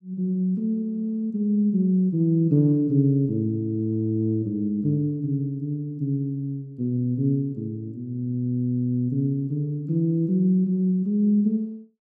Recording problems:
none

